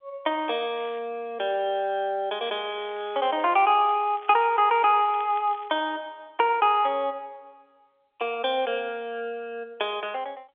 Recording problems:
phone line; 320 Hz to 3.5 kHz, G.711
crackle; at 1 s and from 2.5 to 5.5 s; loose cable, SNR 26 dB

